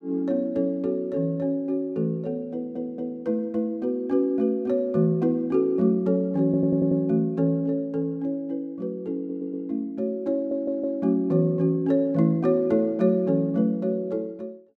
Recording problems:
audio stuttering; 4 times, first at 2.5 s

